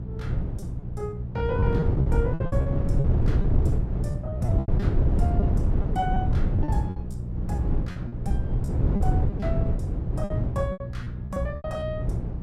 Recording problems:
hum; 60 Hz, harmonics up to 420 Hz, SNR 1 dB
wind noise; below 140 Hz, SNR -7 dB
packet loss; 13% of the sound replaced, filled with repeated pitch periods

